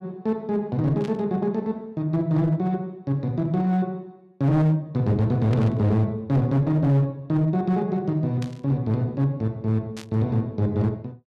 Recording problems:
distorted audio; hard clipping, uneven, signal-to-distortion ratio 11 dB
burst of static; 4 times, first at 1 s; peak -11 dB vs average level

